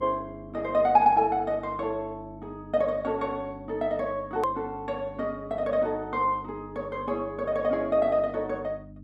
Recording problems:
electrical hum; 50 Hz, harmonics up to 300 Hz, SNR 18 dB
click at an edit; at 4.5 s

